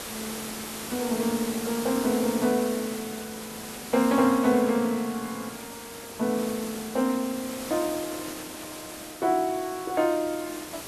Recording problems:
background hiss; slope -3 dB per octave, SNR 10 dB

